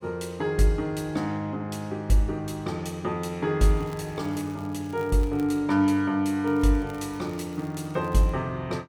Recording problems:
crackle; from 3.5 to 5.5 s and from 6.5 to 8.5 s; loose cable, SNR 26 dB

